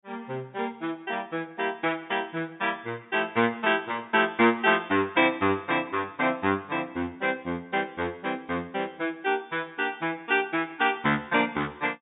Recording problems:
low-pass filter; nothing above 4 kHz

